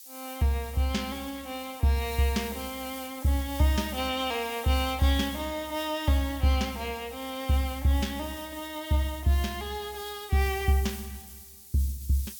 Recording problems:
hiss; SNR 14 dB

